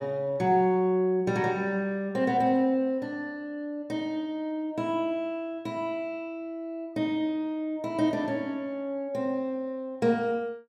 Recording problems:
none

